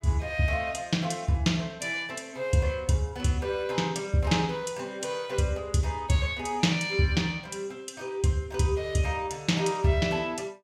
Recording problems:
none

